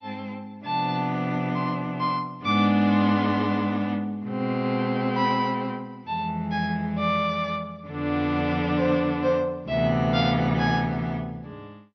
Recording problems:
codec artefacts; MP2, log-spectral distance 2 dB, nothing above 5 kHz

